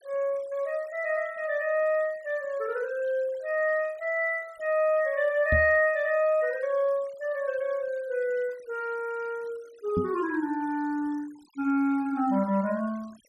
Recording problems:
noise reduction artefacts; signal-to-artefact ratio 27 dB
knock on the microphone; at 5.5 s and at 10 s; peak +3 dB vs average level

